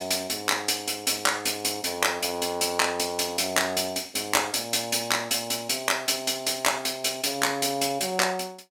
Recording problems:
none

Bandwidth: 16.5 kHz